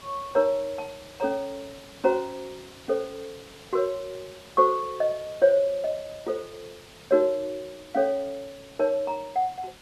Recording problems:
background hiss; slope -2 dB per octave, SNR 20 dB

